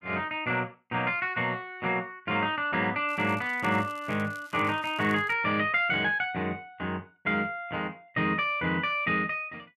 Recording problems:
crackle; from 3 to 5.5 s; loose cable, SNR 26 dB

